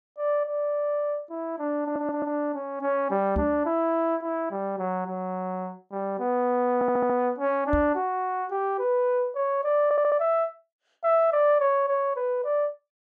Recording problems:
audio stuttering; at 2 s, at 6.5 s and at 10 s
microphone bump; at 3.5 s and at 7.5 s; peak 0 dB vs average level

